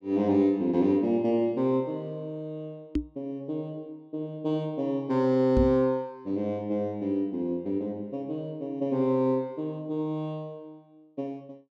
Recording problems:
microphone bump; at 3 s and at 5.5 s; peak +6 dB vs average level

